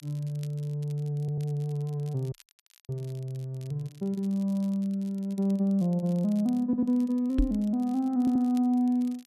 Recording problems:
crackling; vinyl, SNR 28 dB
stutter; at 1 s, at 6.5 s and at 8 s
audio freezing; at 2.5 s for 0.5 s
knock on the microphone; at 7.5 s; peak +5 dB vs average level

